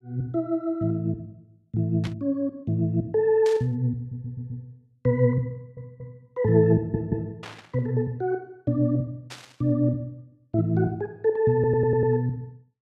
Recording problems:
burst of static; 4 times, first at 2 s; peak -9 dB vs average level
stutter; 4 times, first at 4 s

